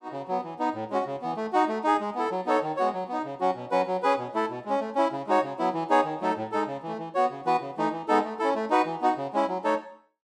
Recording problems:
none

